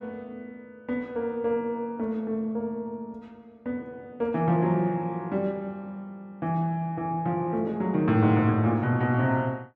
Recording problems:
none

